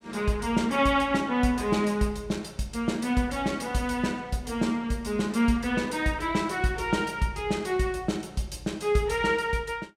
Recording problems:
none

